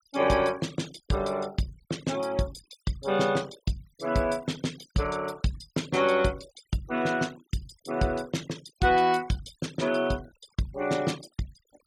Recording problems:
denoising artefacts; signal-to-artefact ratio 19 dB

